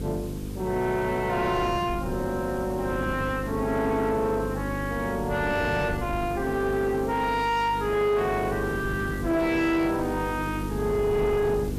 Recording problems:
distortion; soft clipping, signal-to-distortion ratio 11 dB
electrical hum; 50 Hz, harmonics up to 500 Hz, SNR 8 dB
hiss; slope -3 dB per octave, SNR 20 dB
wind on the microphone; below 270 Hz, SNR 12 dB

